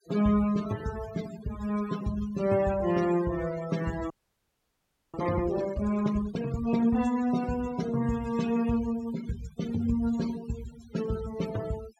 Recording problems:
noise reduction artefacts; signal-to-artefact ratio 15 dB
frozen audio; at 4 s for 1 s

